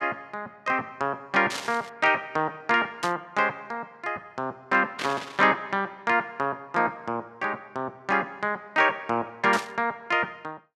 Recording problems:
burst of static; 4 times, first at 1.5 s; peak -1 dB vs average level

